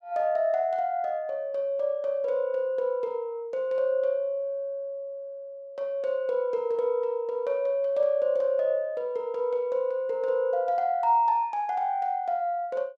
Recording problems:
none

